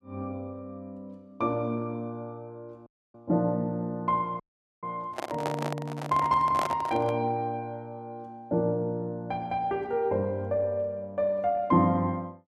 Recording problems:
audio cutting out; at 3 s and at 4.5 s
microphone handling noise; from 5 to 7 s; peak +2 dB vs average level

